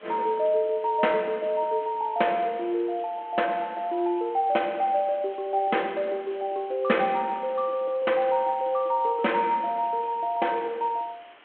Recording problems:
telephone audio; 240 Hz to 3.3 kHz, G.726
background hiss; SNR 26 dB

